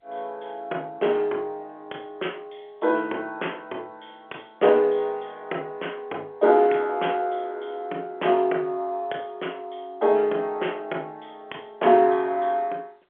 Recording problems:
phone line; 300 Hz to 3.4 kHz, G.711

